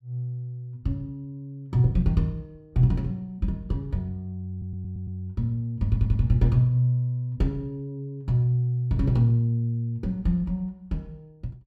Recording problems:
stutter; at 4.5 s and at 6 s

